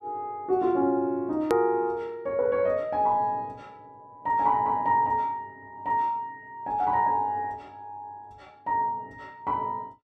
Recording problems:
edit click; at 1.5 s

